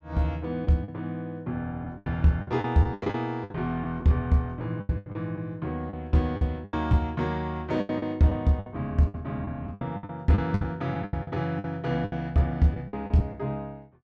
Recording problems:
packet loss; 13% of the sound replaced, filled with the last packet

